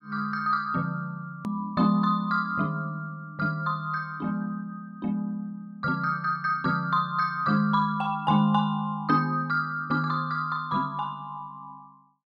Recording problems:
edit click; at 1.5 s

